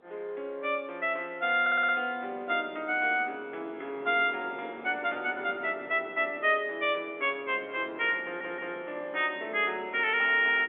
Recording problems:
telephone audio; 280 Hz to 3.5 kHz, G.711
wind on the microphone; below 630 Hz, SNR 19 dB
stutter; at 1.5 s and at 8 s

